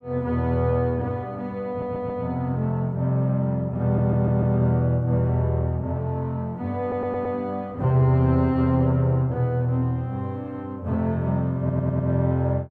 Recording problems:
stutter; 4 times, first at 1.5 s

